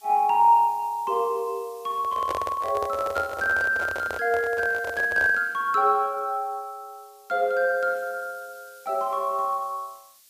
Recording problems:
hiss; SNR 27 dB
microphone handling noise; from 2 to 5.5 s; peak -2 dB vs average level

